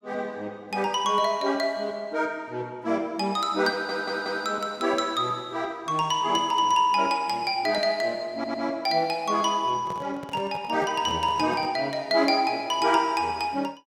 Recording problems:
audio stuttering; at 3.5 s and at 8.5 s
handling noise; from 10 to 12 s; peak -9 dB vs average level

